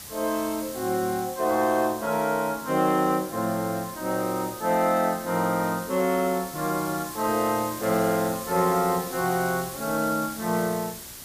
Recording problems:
hiss; slope -1 dB per octave, SNR 12 dB

